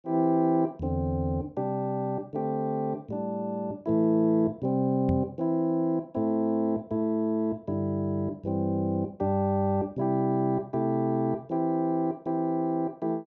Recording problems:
knock on the microphone; at 5 s; peak +1 dB vs average level

